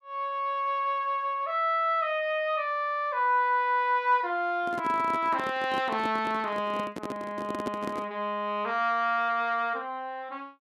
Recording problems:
microphone handling noise; from 4.5 to 8 s; peak -2 dB vs average level

